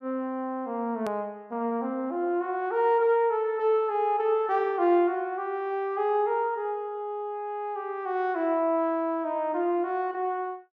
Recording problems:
treble cut off; nothing above 8 kHz
edit click; at 1 s

